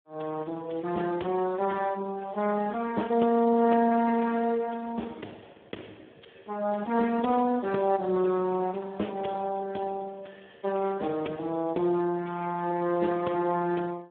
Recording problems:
phone line; 130 Hz to 3.4 kHz, Speex

